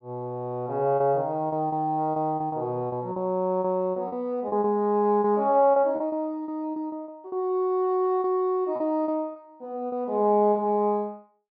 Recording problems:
packet loss; 10% of the sound replaced, filled with repeated pitch periods

